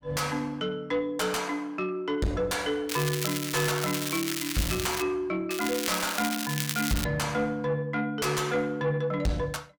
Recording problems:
distorted audio; soft clipping, signal-to-distortion ratio 6 dB
crackling; from 3 to 5 s and from 5.5 to 7 s; loose cable, SNR 3 dB

